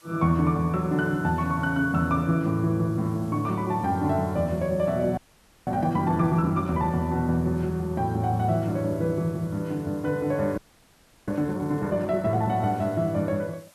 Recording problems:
background hiss; slope -1 dB per octave, SNR 28 dB
frozen audio; at 5 s for 0.5 s and at 11 s for 0.5 s

